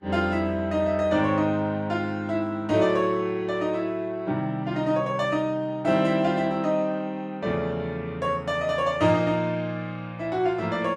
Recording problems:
codec artefacts; Vorbis, log-spectral distance 2 dB, nothing above 12.7 kHz

